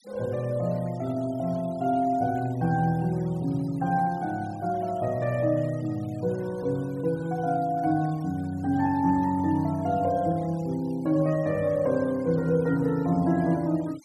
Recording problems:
denoising artefacts; signal-to-artefact ratio 25 dB

